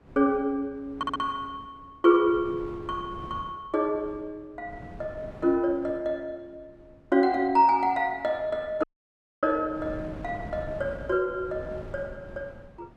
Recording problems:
wind noise; below 390 Hz, SNR 18 dB
stutter; at 1 s
audio cutting out; at 9 s for 0.5 s

